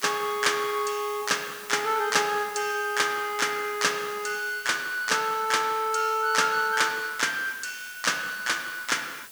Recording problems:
background hiss; slope 0 dB per octave, SNR 17 dB

